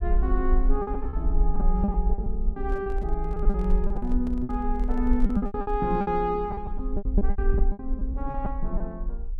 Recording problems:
low-frequency rumble; below 46 Hz, strongest tone 24 Hz, SNR -1 dB
lost packets; 14% of the sound replaced, filled with repeated pitch periods
handling noise; from 2.5 to 6 s; peak -9 dB vs average level

